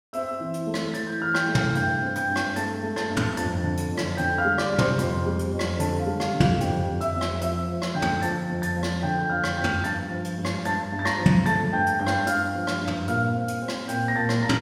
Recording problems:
none

